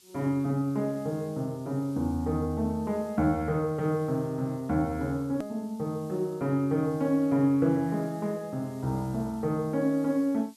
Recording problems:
background hiss; SNR 27 dB
hard cut with a click; at 5.5 s

